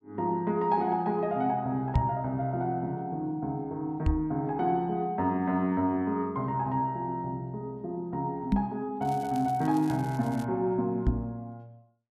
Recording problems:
knock on the microphone; 4 times, first at 2 s; peak +7 dB vs average level
crackling; from 9 to 10 s; loose cable, SNR 22 dB

